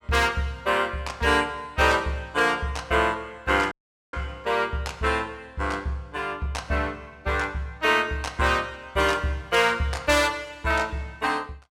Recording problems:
audio cutting out; at 3.5 s

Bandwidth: 17 kHz